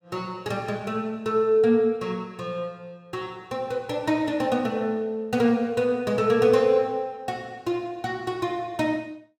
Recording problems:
none

